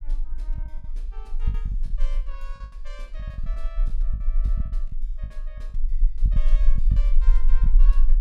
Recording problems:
rumble; below 36 Hz, strongest tone 18 Hz, SNR -22 dB
packet loss; 12% of the sound replaced, filled with the last packet

